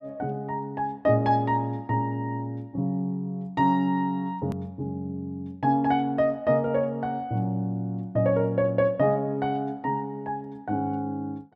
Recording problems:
hard cut with a click; at 4.5 s

